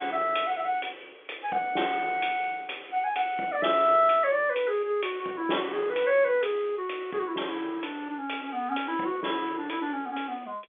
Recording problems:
phone line; 280 Hz to 3.5 kHz, G.711

